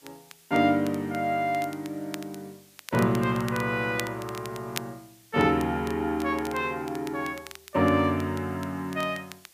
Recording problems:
hiss; slope +1 dB per octave, SNR 27 dB
crackling; vinyl, SNR 17 dB

